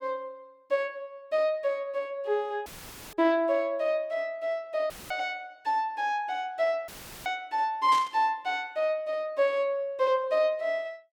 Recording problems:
audio cutting out; at 2.5 s, at 5 s and at 7 s; filled with static
static burst; at 8 s; peak -5 dB vs average level

